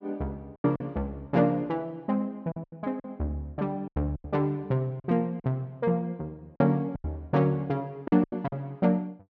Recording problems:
lost packets; 9% of the sound replaced, filled with silence

